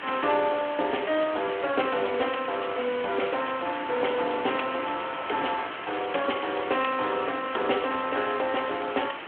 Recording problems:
telephone audio; 300 Hz to 3.3 kHz, Speex
hiss; SNR 9 dB
wind on the microphone; below 720 Hz, SNR 20 dB

